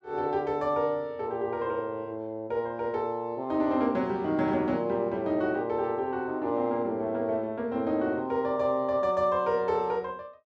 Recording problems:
none

